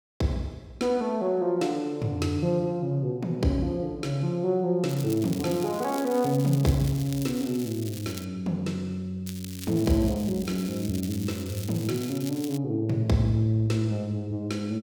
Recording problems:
crackle; from 5 to 8 s and from 9.5 to 13 s; loose cable, SNR 14 dB

